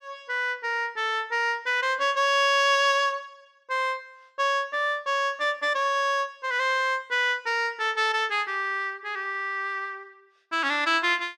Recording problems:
none

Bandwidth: 13.5 kHz